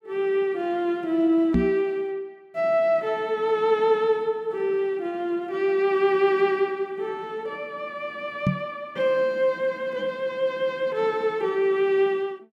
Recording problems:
microphone thump; at 1.5 s and at 8.5 s; peak +6 dB vs average level

